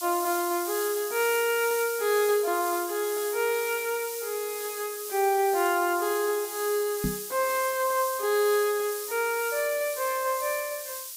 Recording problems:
background hiss; slope +6 dB per octave, SNR 7 dB
microphone bump; at 7 s; peak +1 dB vs average level

